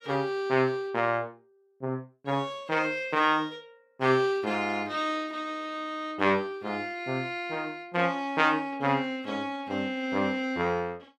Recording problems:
none

